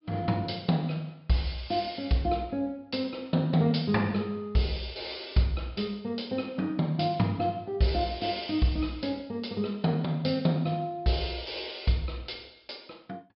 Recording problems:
treble cut off; nothing above 5.3 kHz

